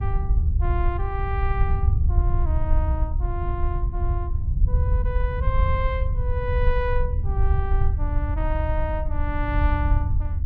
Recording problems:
rumble; below 78 Hz, SNR -7 dB

